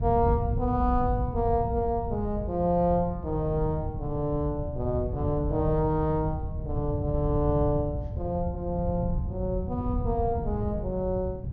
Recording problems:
low-pass filter; nothing above 6.6 kHz
wind on the microphone; below 120 Hz, SNR 4 dB

